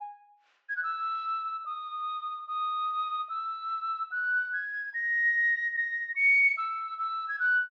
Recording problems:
treble cut off; nothing above 8 kHz

